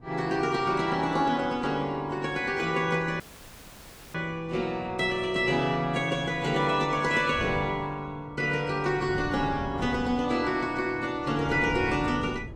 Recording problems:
lossy compression; AAC, log-spectral distance 3 dB
wind noise; below 270 Hz, SNR 16 dB
audio cutting out; at 3 s for 1 s

